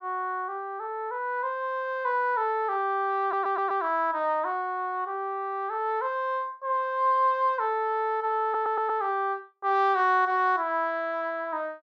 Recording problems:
audio stuttering; at 3 s and at 8.5 s

